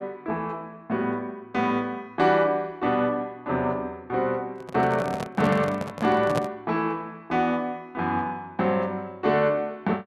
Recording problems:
microphone handling noise; from 4.5 to 6.5 s; peak +2 dB vs average level

